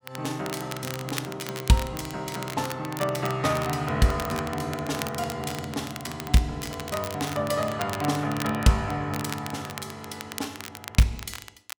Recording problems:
crackle; vinyl, SNR 11 dB

